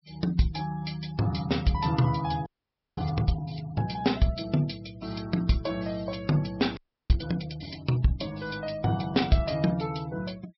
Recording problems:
treble missing; nothing above 5.6 kHz
noise reduction artefacts; signal-to-artefact ratio 21 dB
frozen audio; at 2.5 s for 0.5 s and at 7 s

